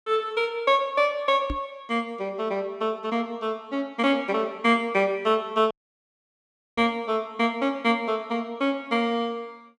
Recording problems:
microphone thump; at 1.5 s and at 7 s; peak -2 dB vs average level
audio cutting out; at 5.5 s for 1 s

